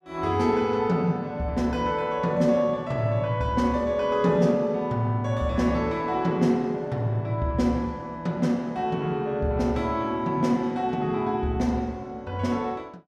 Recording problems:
none

